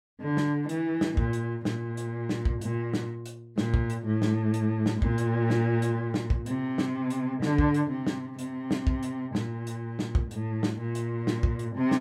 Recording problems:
none

